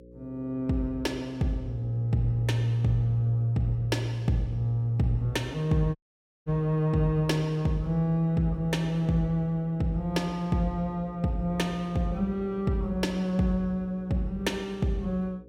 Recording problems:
hum; 60 Hz, harmonics up to 540 Hz, SNR 21 dB
dropout; at 6 s for 0.5 s

